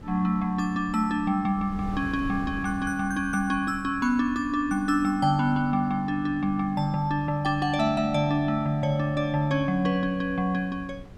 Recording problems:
wind on the microphone; below 210 Hz, SNR 18 dB

